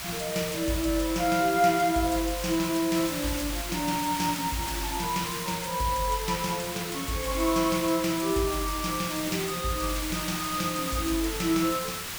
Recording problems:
background hiss; slope 0 dB per octave, SNR 5 dB

